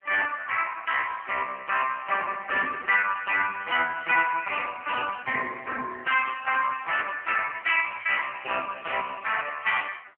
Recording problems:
phone line; 300 Hz to 3.1 kHz, AMR-NB

